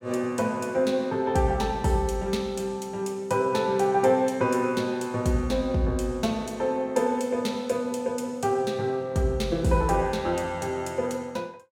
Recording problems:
none

